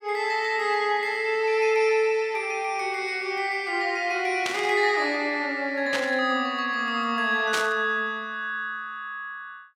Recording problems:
burst of static; at 4.5 s, at 6 s and at 7.5 s; peak +1 dB vs average level

